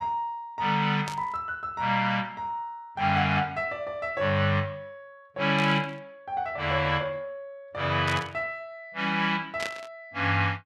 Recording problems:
burst of static; 4 times, first at 1 s; peak -3 dB vs average level

